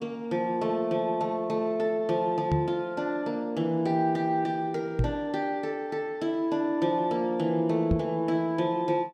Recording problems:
knock on the microphone; at 2.5 s, at 5 s and at 8 s; peak +5 dB vs average level

